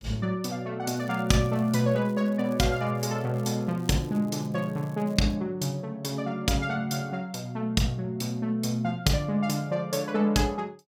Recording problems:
crackling; from 1 to 5.5 s; loose cable, SNR 27 dB

